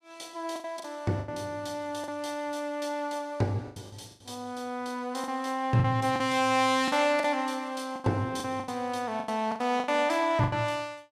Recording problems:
lost packets; 10% of the sound replaced, filled with the last packet

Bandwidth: 14.5 kHz